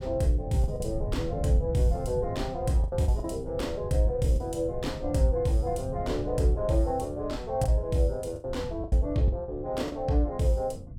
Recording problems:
rumble; below 130 Hz, SNR 10 dB
lost packets; 6% of the sound replaced, filled with the last packet

